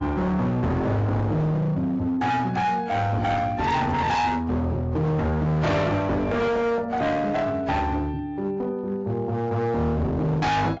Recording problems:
lossy codec; AAC, log-spectral distance 2 dB, nothing above 7.3 kHz
distortion; hard clipping, signal-to-distortion ratio 7 dB

